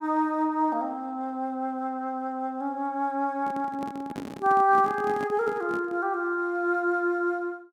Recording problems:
handling noise; from 3.5 to 6 s; peak -5 dB vs average level

